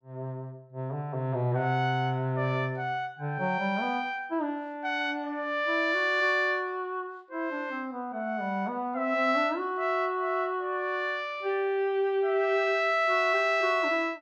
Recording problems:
none

